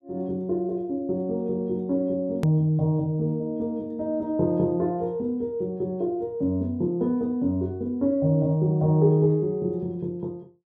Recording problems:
hard cut with a click; at 2.5 s

